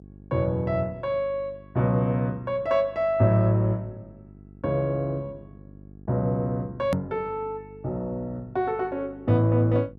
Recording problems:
hum; 50 Hz, harmonics up to 500 Hz, SNR 22 dB
edit click; at 7 s

